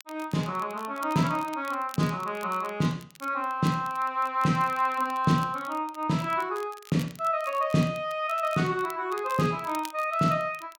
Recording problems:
crackling; vinyl, SNR 21 dB

